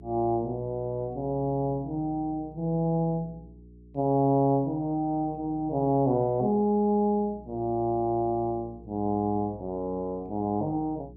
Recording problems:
hum; 60 Hz, harmonics up to 420 Hz, SNR 21 dB

